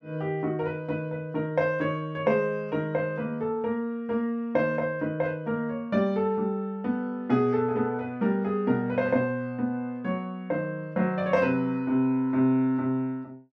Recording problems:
none

